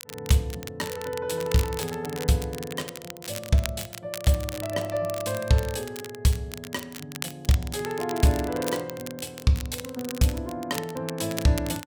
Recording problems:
crackle; vinyl, SNR 11 dB

